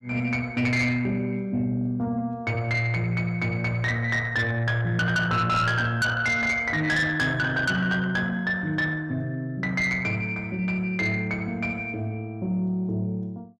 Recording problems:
distorted audio; soft clipping, signal-to-distortion ratio 11 dB

